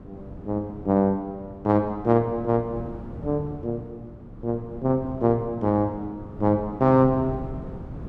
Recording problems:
wind noise; below 270 Hz, SNR 15 dB

